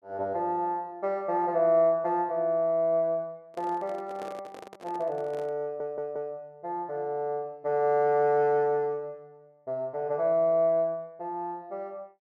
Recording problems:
handling noise; from 3.5 to 5.5 s; peak -10 dB vs average level
stutter; at 5.5 s

